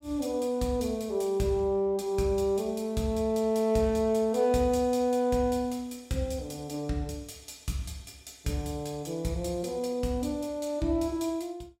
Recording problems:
none

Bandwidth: 16 kHz